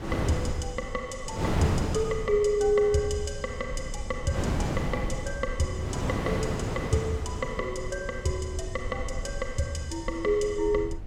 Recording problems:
low-frequency rumble; below 72 Hz, SNR 11 dB
wind noise; below 570 Hz, SNR 3 dB

